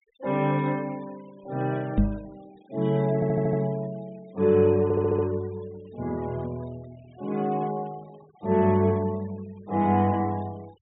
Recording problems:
low-pass filter; nothing above 4 kHz
denoising artefacts; signal-to-artefact ratio 27 dB
microphone bump; at 2 s; peak +7 dB vs average level
audio stuttering; at 3 s and at 5 s

